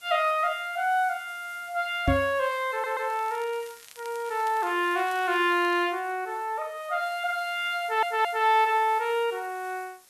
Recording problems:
hiss; slope +1 dB per octave, SNR 24 dB
microphone thump; at 2 s; peak +5 dB vs average level
stutter; at 2.5 s and at 8 s
crackle; from 3 to 6 s; loose cable, SNR 24 dB

